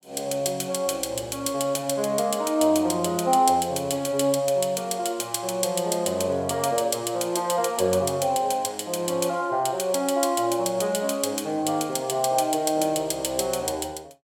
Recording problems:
none

